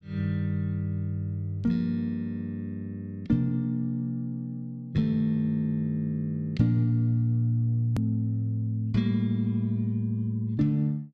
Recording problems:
edit click; at 8 s

